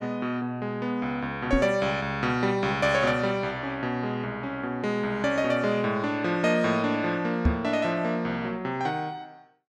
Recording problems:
knock on the microphone; at 1.5 s and at 7.5 s; peak +7 dB vs average level

